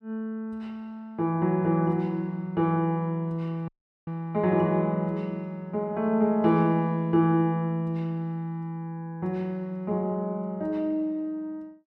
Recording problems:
dropout; at 3.5 s

